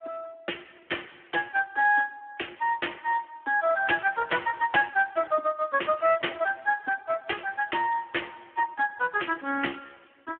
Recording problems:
telephone audio; 240 Hz to 2.1 kHz, Speex

